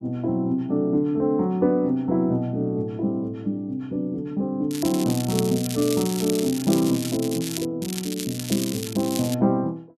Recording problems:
crackle; from 4.5 to 7.5 s and from 8 to 9.5 s; loose cable, SNR 9 dB

